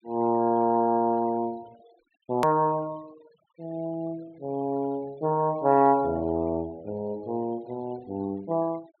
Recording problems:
treble missing; nothing above 4.3 kHz
denoising artefacts; signal-to-artefact ratio 27 dB
edit click; at 2.5 s

